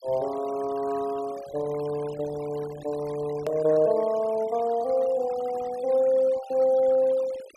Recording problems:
denoising artefacts; signal-to-artefact ratio 21 dB
edit click; at 3.5 s

